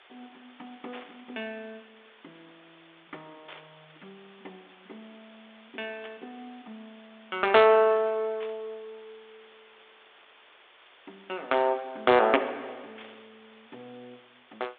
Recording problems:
phone line; 300 Hz to 3.7 kHz, G.726
hiss; SNR 29 dB
static burst; 5 times, first at 1 s; peak -14 dB vs average level

